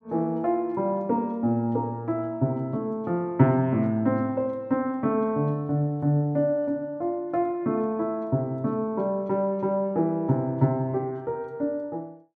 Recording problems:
none

